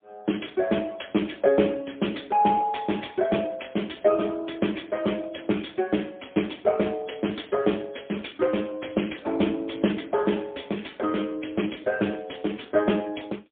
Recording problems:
telephone audio; 170 Hz to 3.5 kHz, AMR-NB, then MP3

